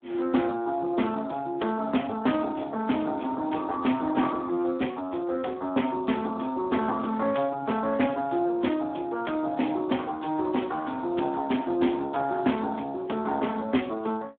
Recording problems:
telephone audio; 170 Hz to 3.4 kHz, Speex

